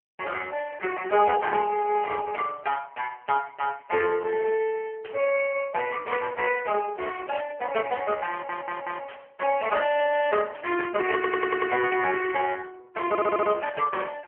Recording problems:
phone line; 320 Hz to 3 kHz, AMR-NB
static burst; 5 times, first at 2 s; peak -11 dB vs average level
stutter; at 8.5 s, at 11 s and at 13 s

